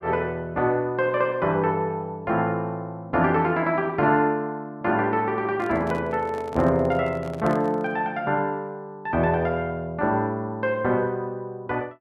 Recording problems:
microphone handling noise; from 5.5 to 8 s; peak -8 dB vs average level

